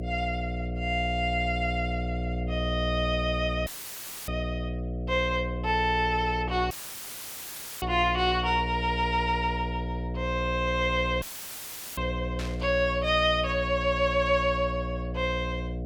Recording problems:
mains hum; 60 Hz, harmonics up to 720 Hz, SNR 5 dB
audio cutting out; at 3.5 s for 0.5 s, at 6.5 s for 1 s and at 11 s for 1 s; filled with static
static burst; at 12 s; peak -7 dB vs average level

